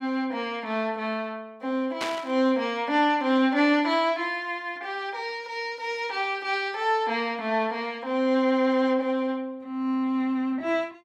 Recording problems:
static burst; at 2 s; peak -1 dB vs average level

